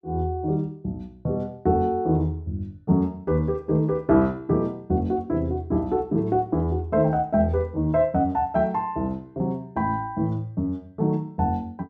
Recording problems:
none

